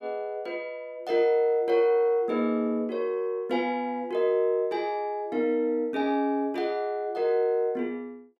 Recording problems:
none

